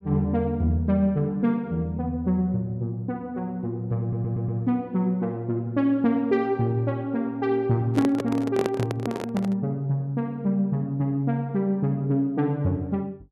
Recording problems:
audio stuttering; at 4 s
microphone handling noise; from 8 to 9.5 s; peak +2 dB vs average level

